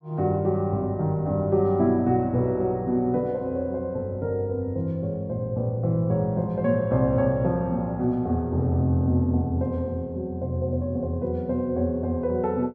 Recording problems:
none

